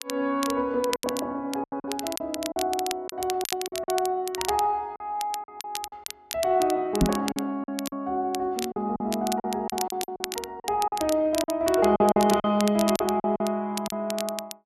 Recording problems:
crackle; vinyl, SNR 9 dB
lost packets; 10% of the sound replaced, filled with silence
microphone bump; at 7 s; peak +8 dB vs average level

